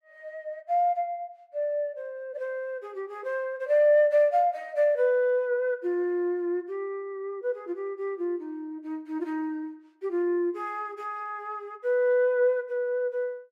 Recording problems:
none

